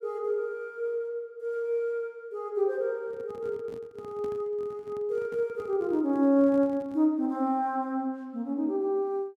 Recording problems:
microphone handling noise; from 3 to 7 s; peak -11 dB vs average level

